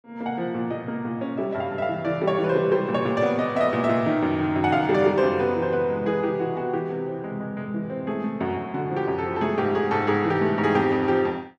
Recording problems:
none

